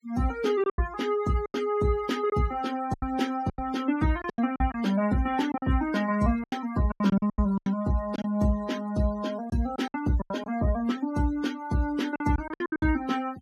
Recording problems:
denoising artefacts; signal-to-artefact ratio 18 dB
packet loss; 11% of the sound replaced, filled with silence

